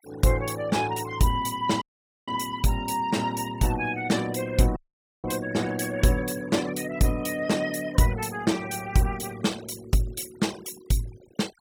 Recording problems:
denoising artefacts; signal-to-artefact ratio 19 dB
dropout; at 2 s and at 5 s

